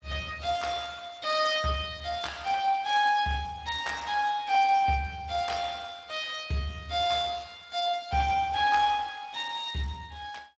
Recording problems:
lossy codec; Speex, log-spectral distance 5 dB, nothing above 7.3 kHz

